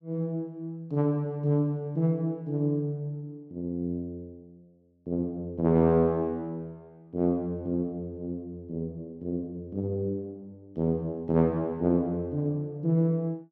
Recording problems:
none

